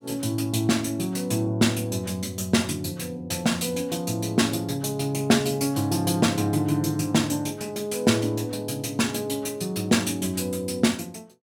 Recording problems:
none

